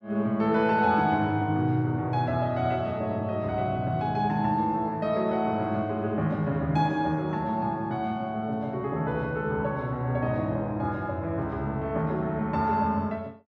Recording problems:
none

